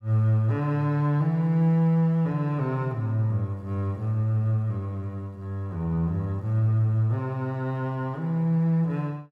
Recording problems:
none

